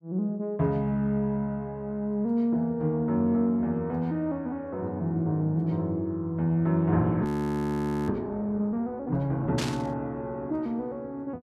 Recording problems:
frozen audio; at 7.5 s for 1 s
static burst; at 9.5 s; peak -1 dB vs average level

